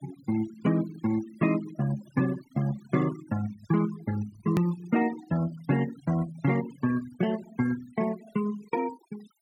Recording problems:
noise reduction artefacts; signal-to-artefact ratio 16 dB
edit click; at 4.5 s

